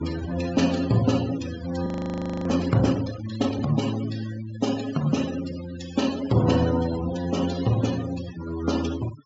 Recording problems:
treble missing; nothing above 8 kHz
noise reduction artefacts; signal-to-artefact ratio 13 dB
audio freezing; at 2 s for 0.5 s

